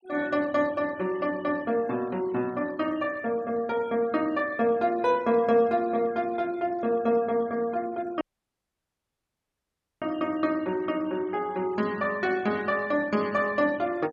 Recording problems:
denoising artefacts; signal-to-artefact ratio 23 dB
dropout; at 8 s for 2 s

